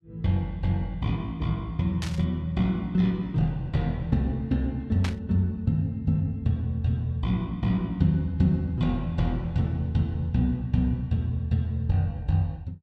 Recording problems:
burst of static; at 2 s and at 5 s; peak -3 dB vs average level

